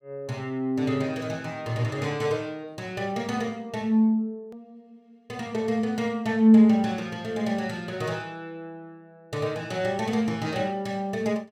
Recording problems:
hard cut with a click; at 4.5 s

